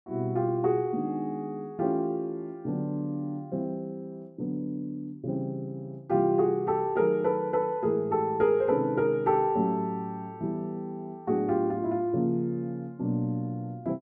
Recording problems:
none

